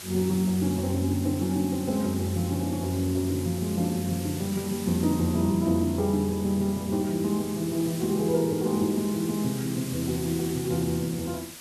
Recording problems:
hiss; slope 0 dB per octave, SNR 13 dB

